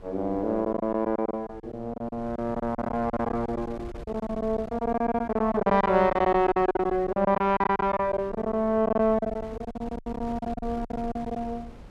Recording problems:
wind on the microphone; below 280 Hz, SNR 18 dB
packet loss; 17% of the sound replaced, filled with silence

